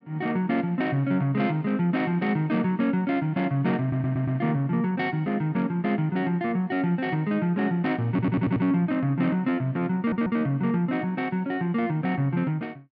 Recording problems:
audio stuttering; at 4 s, at 8 s and at 10 s

